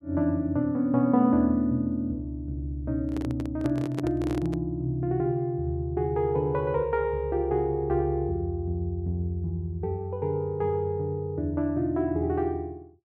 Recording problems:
handling noise; from 3 to 4.5 s; peak -2 dB vs average level

